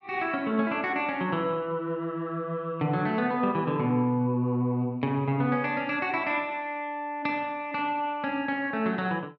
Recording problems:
none

